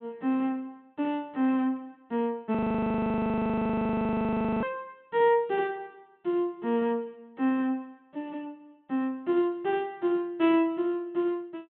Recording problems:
treble missing; nothing above 4 kHz
frozen audio; at 2.5 s for 2 s

